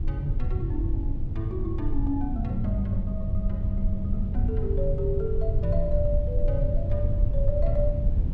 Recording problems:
low-frequency rumble; below 86 Hz, SNR -3 dB

